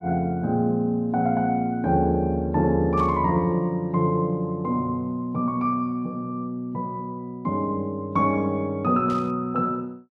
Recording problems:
static burst; at 3 s and at 9 s; peak -15 dB vs average level

